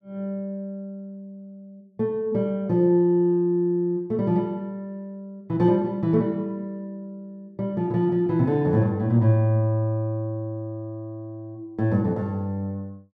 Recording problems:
none

